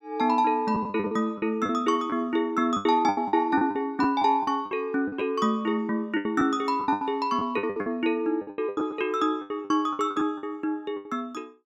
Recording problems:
packet loss; 15% of the sound replaced, filled with the last packet

